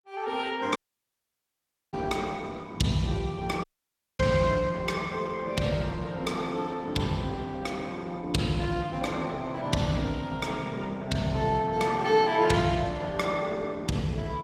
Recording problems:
lossy compression; Opus, log-spectral distance 3 dB, nothing above 17.7 kHz
audio cutting out; at 1 s for 1 s and at 3.5 s for 0.5 s

